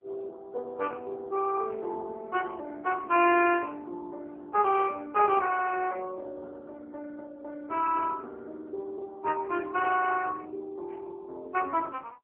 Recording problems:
telephone audio; 300 Hz to 3.1 kHz, AMR-NB

